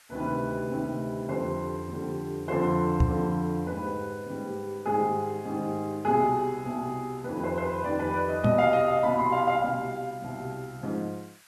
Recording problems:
background hiss; SNR 26 dB
microphone thump; at 3 s and at 8.5 s; peak +9 dB vs average level

